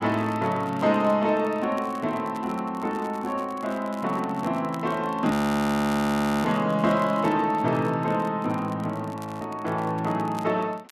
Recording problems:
crackling; vinyl, SNR 25 dB
frozen audio; at 5.5 s for 1 s and at 9 s

